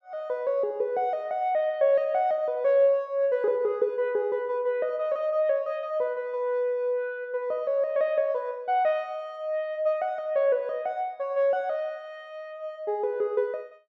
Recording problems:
none

